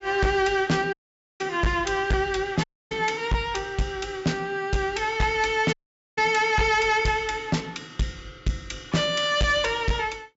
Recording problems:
treble missing; nothing above 8 kHz
distorted audio; hard clipping, signal-to-distortion ratio 11 dB
audio cutting out; at 1 s, at 2.5 s and at 5.5 s

